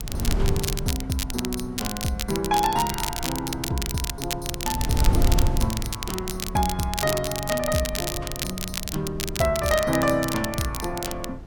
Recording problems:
wind noise; below 98 Hz, SNR 5 dB
crackle; vinyl, SNR 4 dB

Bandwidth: 17 kHz